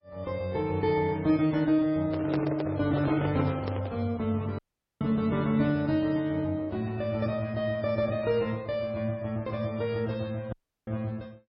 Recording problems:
codec artefacts; AAC, then MP3, log-spectral distance 2 dB, nothing above 5 kHz
microphone handling noise; from 2 to 4 s; peak 0 dB vs average level
audio cutting out; at 4.5 s and at 11 s

